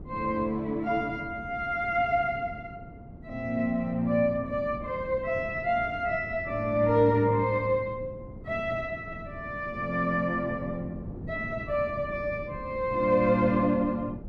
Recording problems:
wind noise; below 270 Hz, SNR 15 dB

